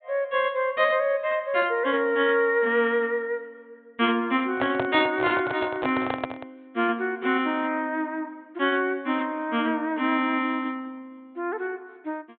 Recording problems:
low-pass filter; nothing above 4 kHz
microphone handling noise; from 4.5 to 6.5 s; peak 0 dB vs average level

